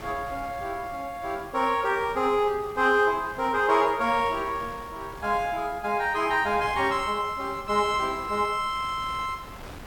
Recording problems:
background hiss; slope +1 dB per octave, SNR 29 dB
wind on the microphone; below 1.2 kHz, SNR 19 dB

